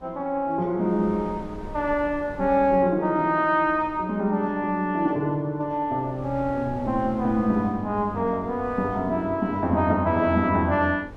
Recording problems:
wind on the microphone; below 410 Hz, SNR 19 dB

